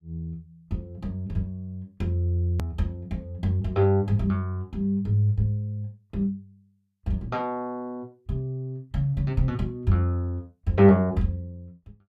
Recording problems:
click at an edit; at 2.5 s

